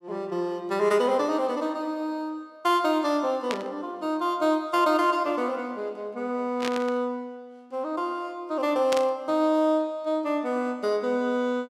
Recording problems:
static burst; at 3.5 s, at 6.5 s and at 9 s; peak 0 dB vs average level

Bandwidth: 16.5 kHz